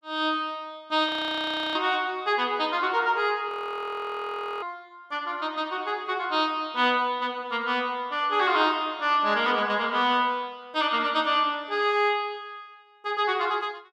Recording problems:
frozen audio; at 1 s for 0.5 s and at 3.5 s for 1 s

